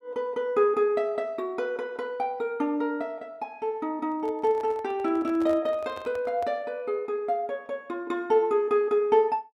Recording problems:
handling noise; from 4 to 6.5 s; peak -11 dB vs average level

